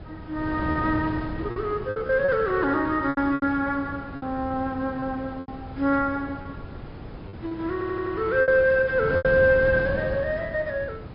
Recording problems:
low-pass filter; nothing above 5.2 kHz
lossy compression; AAC, log-spectral distance 2 dB
wind noise; below 420 Hz, SNR 12 dB
packet loss; 8% of the sound replaced, filled with repeated pitch periods
stutter; at 7.5 s

